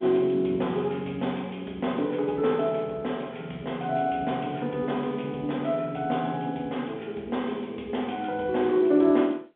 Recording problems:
telephone audio; 220 Hz to 3.5 kHz, G.711

